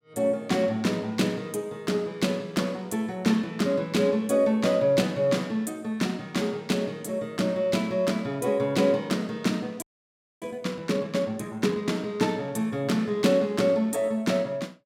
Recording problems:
audio freezing; at 10 s for 0.5 s

